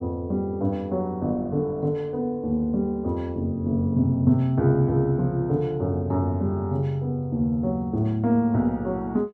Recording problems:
none

